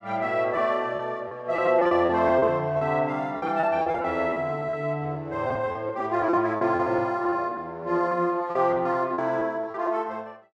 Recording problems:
lost packets; 11% of the sound replaced, filled with repeated pitch periods

